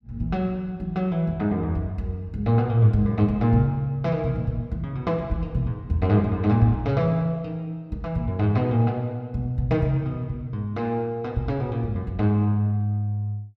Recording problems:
none

